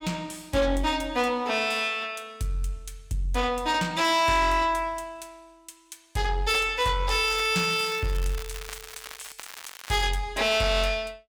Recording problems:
distorted audio; soft clipping, signal-to-distortion ratio 10 dB
crackle; from 7.5 to 9.5 s and at 9.5 s; loose cable, SNR 15 dB

